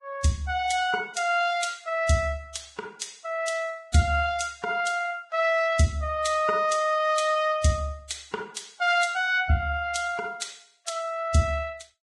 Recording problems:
lossy codec; Vorbis, log-spectral distance 3 dB, nothing above 10.4 kHz

